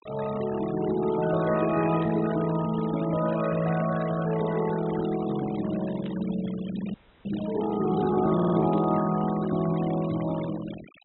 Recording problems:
treble cut off; nothing above 3.9 kHz
denoising artefacts; signal-to-artefact ratio 15 dB
burst of static; at 2 s, at 6 s and at 8.5 s; peak -15 dB vs average level
frozen audio; at 7 s
stutter; at 8.5 s

